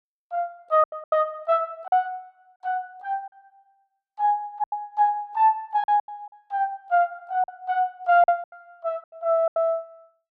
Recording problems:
packet loss; 10% of the sound replaced, filled with silence

